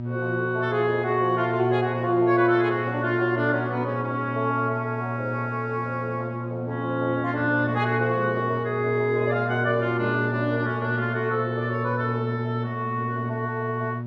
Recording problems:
electrical hum; 60 Hz, harmonics up to 600 Hz, SNR 6 dB

